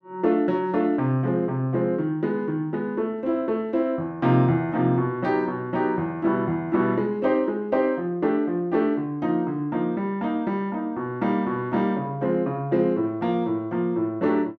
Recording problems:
none

